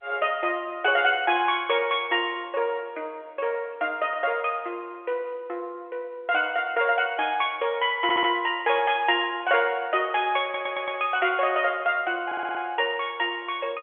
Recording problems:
phone line; 340 Hz to 3.4 kHz, G.711
audio stuttering; at 8 s, at 10 s and at 12 s

